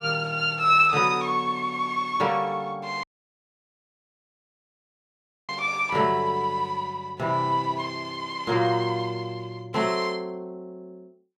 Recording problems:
dropout; at 3 s for 2.5 s

